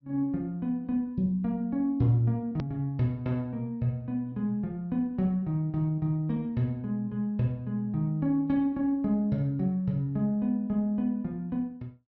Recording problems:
low-pass filter; nothing above 6 kHz
hard cut with a click; at 2.5 s

